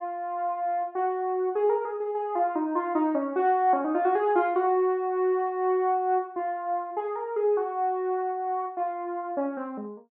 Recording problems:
none

